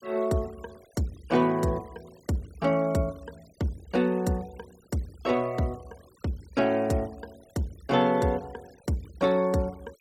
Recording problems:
denoising artefacts; signal-to-artefact ratio 26 dB

